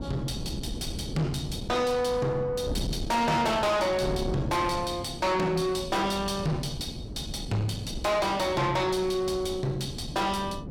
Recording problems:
distorted audio; soft clipping, signal-to-distortion ratio 6 dB
wind on the microphone; below 310 Hz, SNR 9 dB

